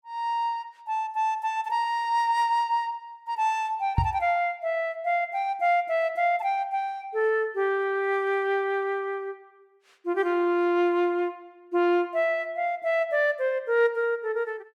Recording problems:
microphone bump; at 4 s; peak +5 dB vs average level

